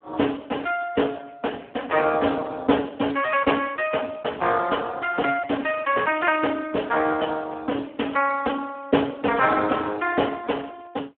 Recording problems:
phone line; 240 Hz to 3.2 kHz, Speex

